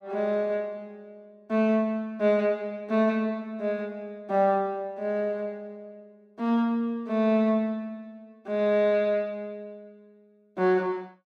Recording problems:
none

